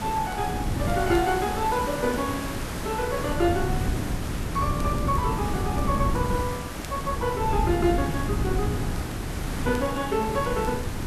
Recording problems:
background hiss; slope -4 dB per octave, SNR 7 dB
wind on the microphone; below 210 Hz, SNR 3 dB
crackling; vinyl, SNR 26 dB

